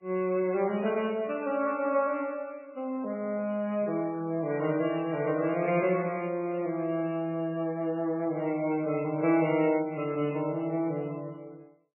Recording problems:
codec artefacts; MP3, then AAC, log-spectral distance 2 dB, nothing above 2.4 kHz

